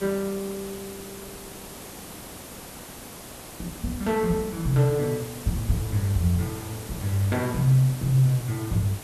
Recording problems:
hiss; slope -4 dB per octave, SNR 14 dB

